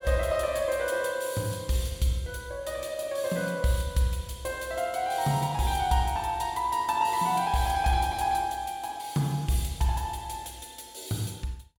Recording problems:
none

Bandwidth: 17 kHz